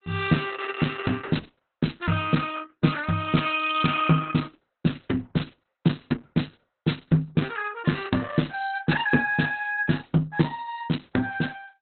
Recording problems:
lossy compression; Opus, log-spectral distance 6 dB, nothing above 4.1 kHz

